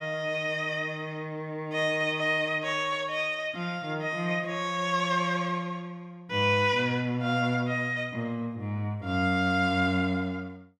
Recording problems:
none

